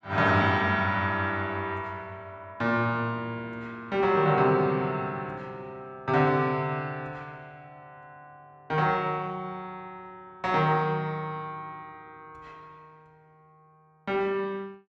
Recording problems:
none

